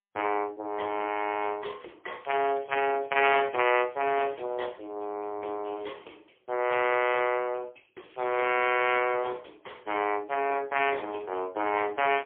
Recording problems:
phone line; 280 Hz to 3.2 kHz, AMR-NB, then MP3
crackling; at 1.5 s, from 2 to 4.5 s and at 8 s; loose cable, SNR 29 dB

